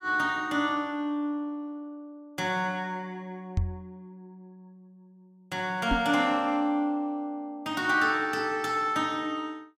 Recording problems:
knock on the microphone; at 3.5 s and at 6 s; peak +4 dB vs average level

